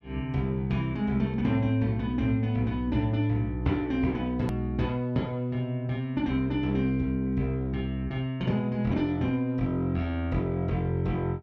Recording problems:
click at an edit; at 4.5 s

